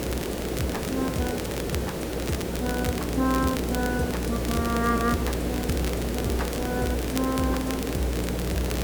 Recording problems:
electrical hum; 60 Hz, harmonics up to 300 Hz, SNR 4 dB
background hiss; SNR 1 dB
crackle; vinyl, SNR 8 dB

